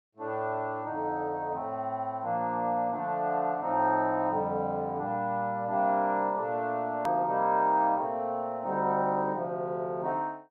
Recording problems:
edit click; at 7 s

